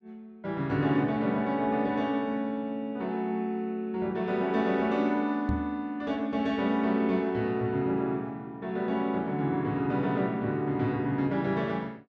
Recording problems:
microphone bump; at 5.5 s; peak +2 dB vs average level

